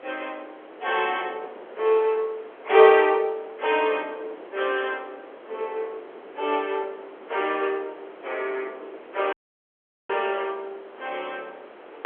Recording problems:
telephone audio; 340 Hz to 3.4 kHz, G.711
background hiss; SNR 23 dB
wind noise; below 660 Hz, SNR 21 dB
audio cutting out; at 9.5 s for 1 s

